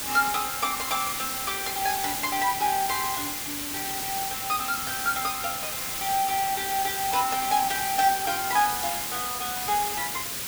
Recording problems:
background hiss; SNR 1 dB

